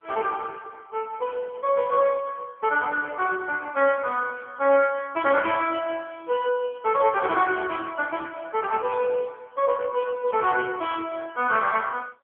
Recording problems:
phone line; 320 Hz to 3.3 kHz, AMR-NB

